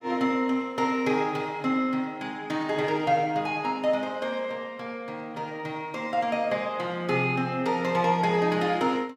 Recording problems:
none

